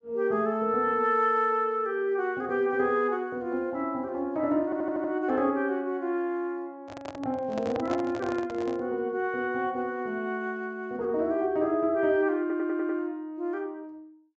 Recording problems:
treble missing; nothing above 8 kHz
stutter; at 4.5 s and at 12 s
microphone handling noise; from 7 to 9 s; peak -3 dB vs average level

